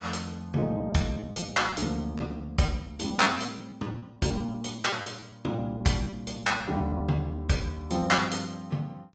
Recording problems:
low-pass filter; nothing above 7.6 kHz
codec artefacts; AAC, log-spectral distance 3 dB
lost packets; 14% of the sound replaced, filled with repeated pitch periods

